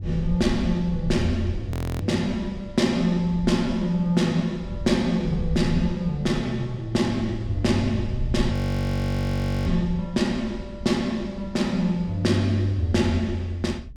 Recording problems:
wind on the microphone; below 94 Hz, SNR 10 dB
audio freezing; at 1.5 s and at 8.5 s for 1 s

